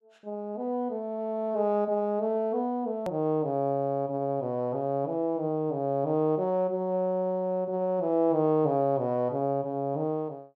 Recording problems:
edit click; at 3 s

